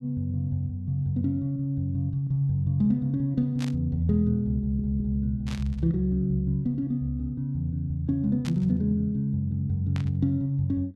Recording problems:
static burst; 4 times, first at 3.5 s; peak -8 dB vs average level
stutter; at 4.5 s

